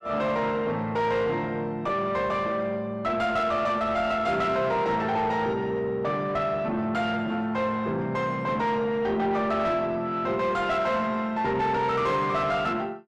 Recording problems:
distorted audio; soft clipping, signal-to-distortion ratio 10 dB

